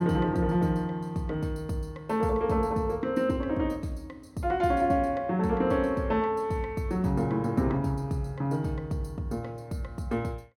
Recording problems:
none

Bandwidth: 16.5 kHz